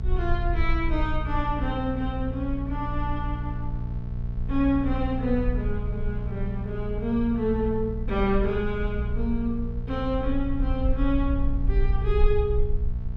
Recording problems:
electrical hum; 60 Hz, harmonics up to 660 Hz, SNR 6 dB
low-frequency rumble; below 54 Hz, SNR 3 dB

